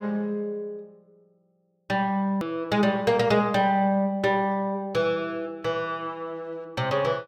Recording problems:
edit click; at 2.5 s

